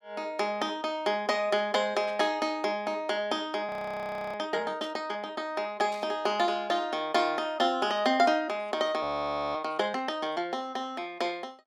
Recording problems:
burst of static; at 2 s, at 5 s and at 6 s; peak -13 dB vs average level
audio freezing; at 3.5 s for 0.5 s and at 9 s for 0.5 s

